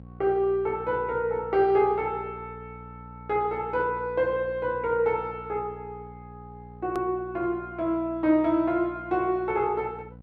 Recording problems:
mains hum; 60 Hz, harmonics up to 780 Hz, SNR 19 dB
hard cut with a click; at 7 s

